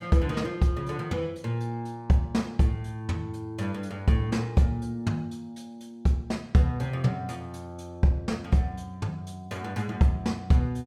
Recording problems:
none

